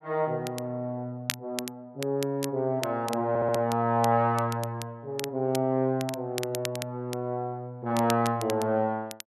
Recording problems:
crackling; vinyl, SNR 12 dB
audio stuttering; at 3.5 s

